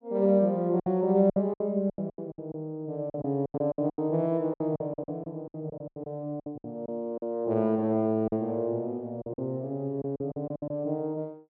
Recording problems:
packet loss; 14% of the sound replaced, filled with silence

